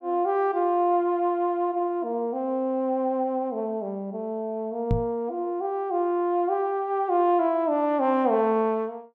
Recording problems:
microphone bump; at 5 s; peak +4 dB vs average level

